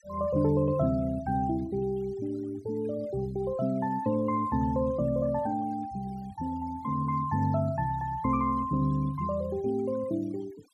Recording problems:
noise reduction artefacts; signal-to-artefact ratio 23 dB

